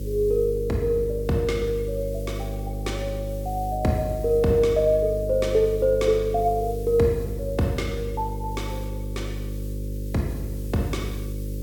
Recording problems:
electrical hum; 50 Hz, harmonics up to 550 Hz, SNR 7 dB
background hiss; slope +5 dB per octave, SNR 23 dB

